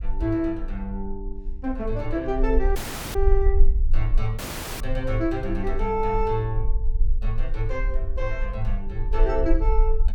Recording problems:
low-frequency rumble; below 44 Hz, strongest tone 18 Hz, SNR 0 dB
audio cutting out; at 3 s and at 4.5 s

